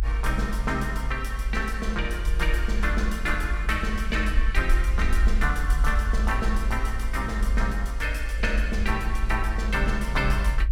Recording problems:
low-frequency rumble; below 52 Hz, strongest tone 50 Hz, SNR -1 dB

